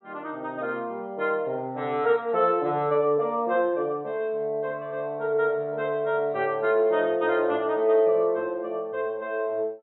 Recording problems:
low-pass filter; nothing above 4 kHz

